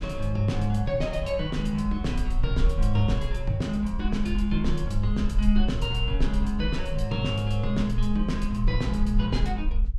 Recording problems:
low-frequency rumble; below 48 Hz, SNR 4 dB

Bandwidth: 14.5 kHz